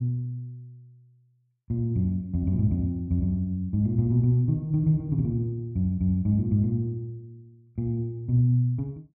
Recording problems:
none

